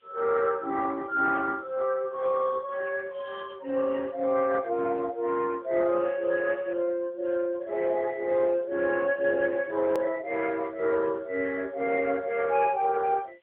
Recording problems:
telephone audio; 300 Hz to 4 kHz, AMR-NB
background hiss; SNR 42 dB
hard cut with a click; at 10 s

